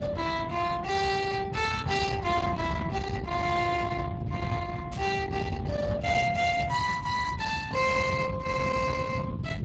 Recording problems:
codec artefacts; Speex, log-spectral distance 4 dB
distorted audio; soft clipping, signal-to-distortion ratio 12 dB
low-frequency rumble; below 580 Hz, SNR 6 dB
static burst; at 5 s and at 6.5 s; peak -12 dB vs average level

